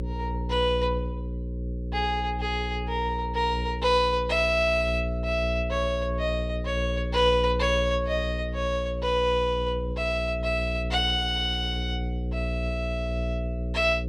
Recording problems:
hum; 60 Hz, harmonics up to 540 Hz, SNR 5 dB

